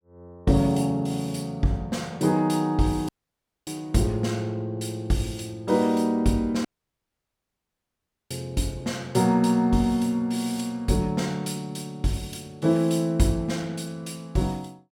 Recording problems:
audio cutting out; at 3 s for 0.5 s and at 6.5 s for 1.5 s

